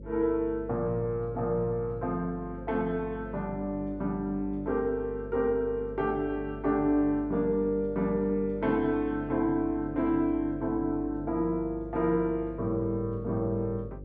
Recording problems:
electrical hum; 50 Hz, harmonics up to 550 Hz, SNR 14 dB

